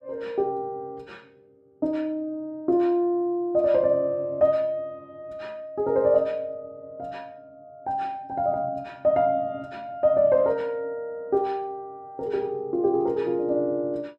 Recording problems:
none

